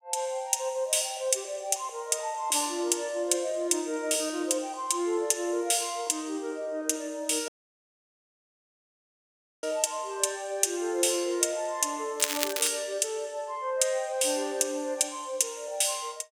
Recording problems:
dropout; at 7.5 s for 2 s
crackle; at 12 s; loose cable, SNR 3 dB

